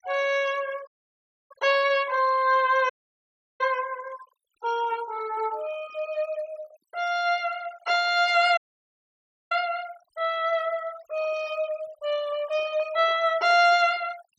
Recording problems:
noise reduction artefacts; signal-to-artefact ratio 20 dB
audio cutting out; at 1 s for 0.5 s, at 3 s for 0.5 s and at 8.5 s for 1 s

